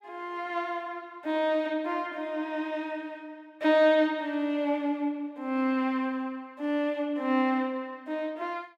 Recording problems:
none

